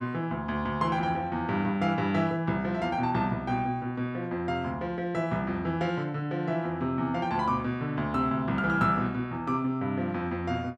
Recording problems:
none

